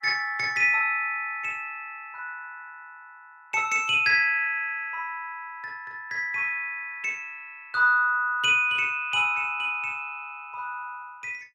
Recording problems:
lossy codec; Opus, log-spectral distance 2 dB, nothing above 16.1 kHz

